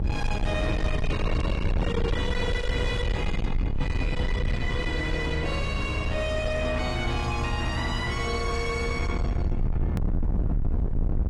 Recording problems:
lossy codec; AAC, log-spectral distance 2 dB, nothing above 11.3 kHz
distorted audio; soft clipping, signal-to-distortion ratio 7 dB
rumble; below 130 Hz, SNR 0 dB
hard cut with a click; at 10 s

